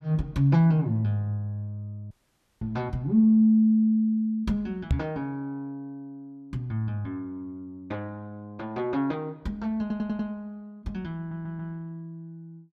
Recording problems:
audio cutting out; at 2 s for 0.5 s
microphone thump; at 5 s; peak +6 dB vs average level
audio stuttering; at 10 s and at 11 s

